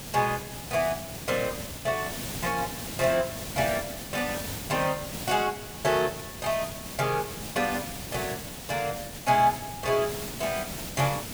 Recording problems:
background hiss; SNR 7 dB

